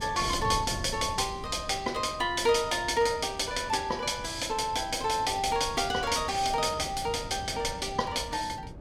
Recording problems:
wind noise; below 220 Hz, SNR 14 dB

